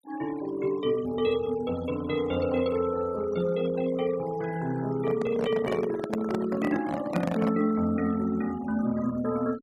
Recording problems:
noise reduction artefacts; signal-to-artefact ratio 18 dB
microphone handling noise; from 5 to 7.5 s; peak +1 dB vs average level

